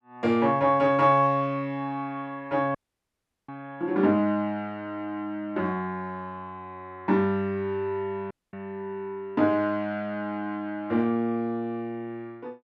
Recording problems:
dropout; at 3 s for 0.5 s and at 8.5 s

